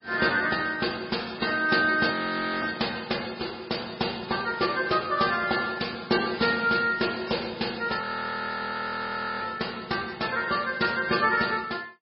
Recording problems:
lossy codec; MP3, log-spectral distance 6 dB, nothing above 4.9 kHz
frozen audio; at 2 s and at 8 s for 1.5 s

